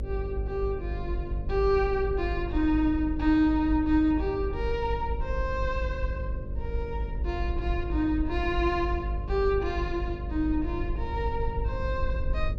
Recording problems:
hum; 50 Hz, harmonics up to 600 Hz, SNR 8 dB
low-frequency rumble; below 66 Hz, SNR 6 dB

